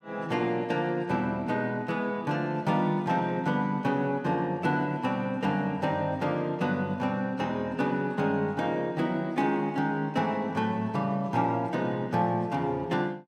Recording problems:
none

